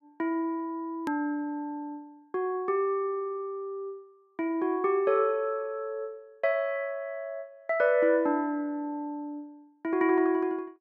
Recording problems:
edit click; at 1 s

